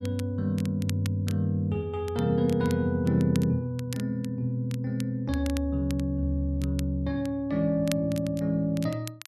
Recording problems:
crackling; vinyl, SNR 18 dB

